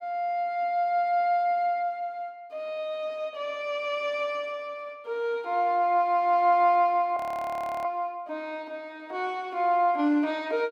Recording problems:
audio freezing; at 7 s for 0.5 s

